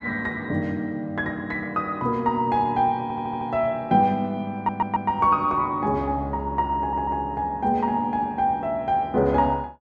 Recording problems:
audio stuttering; at 3 s, at 4.5 s and at 7 s

